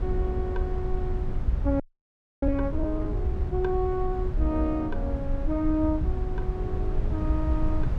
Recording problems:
low-frequency rumble; below 82 Hz, SNR 1 dB
audio freezing; at 2 s for 0.5 s

